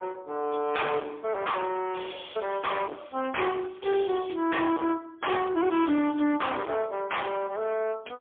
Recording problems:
telephone audio; 260 Hz to 3.5 kHz, AMR-NB, then MP3
distorted audio; hard clipping, uneven, signal-to-distortion ratio 6 dB
crackle; from 2.5 to 5 s; loose cable, SNR 29 dB

